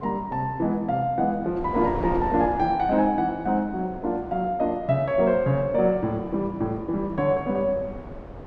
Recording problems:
wind on the microphone; below 560 Hz, SNR 14 dB

